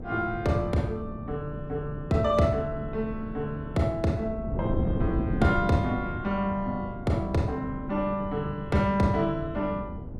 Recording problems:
wind noise; below 240 Hz, SNR 7 dB

